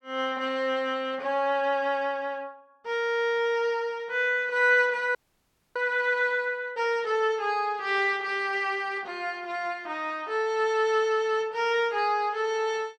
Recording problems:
frozen audio; at 5 s for 0.5 s

